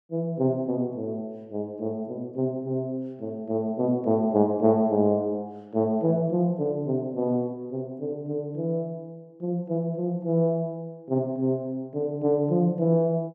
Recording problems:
none

